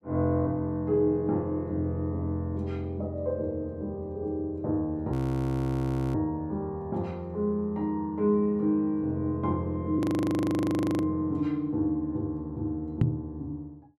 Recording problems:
frozen audio; at 5 s for 1 s and at 10 s for 1 s
microphone bump; at 13 s; peak +8 dB vs average level

